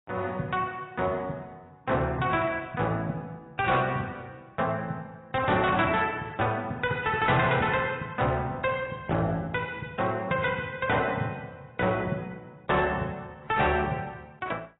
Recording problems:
codec artefacts; AAC, log-spectral distance 3 dB, nothing above 3.8 kHz
distorted audio; hard clipping, signal-to-distortion ratio 12 dB

